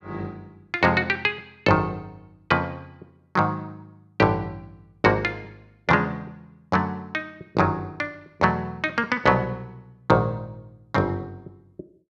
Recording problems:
none

